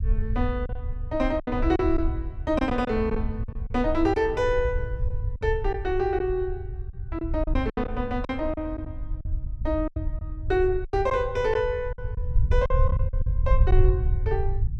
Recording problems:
low-frequency rumble; below 78 Hz, SNR 3 dB
lost packets; 8% of the sound replaced, filled with silence

